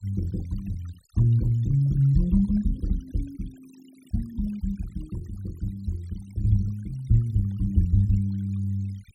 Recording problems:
denoising artefacts; signal-to-artefact ratio 26 dB

